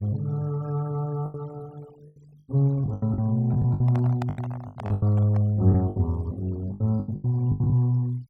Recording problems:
noise reduction artefacts; signal-to-artefact ratio 27 dB
lost packets; 14% of the sound replaced, filled with the last packet
microphone handling noise; from 3.5 to 5.5 s; peak -6 dB vs average level

